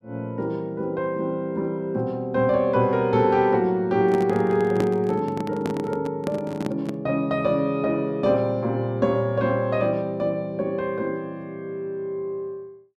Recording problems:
handling noise; from 4 to 7 s; peak +1 dB vs average level

